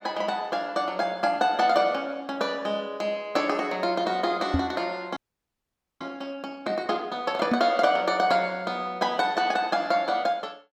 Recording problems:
knock on the microphone; at 4.5 s and at 7.5 s; peak +4 dB vs average level
audio freezing; at 5 s for 1 s

